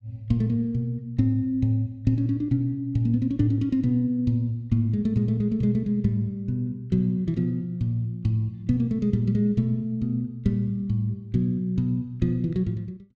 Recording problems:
none

